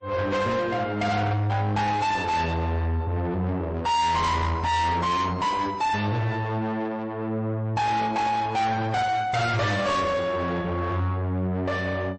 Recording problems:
codec artefacts; MP3, then MP3, log-spectral distance 2 dB, nothing above 8.2 kHz
distortion; soft clipping, signal-to-distortion ratio 7 dB

